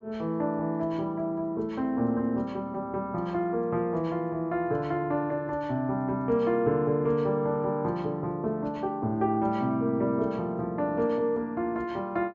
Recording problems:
treble missing; nothing above 8 kHz

